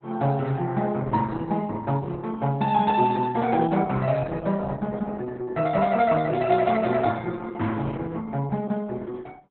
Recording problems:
lossy compression; Opus, log-spectral distance 3 dB, nothing above 3.8 kHz

